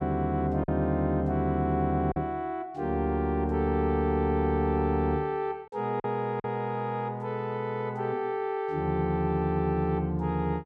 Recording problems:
packet loss; 1.9% of the sound replaced, filled with silence

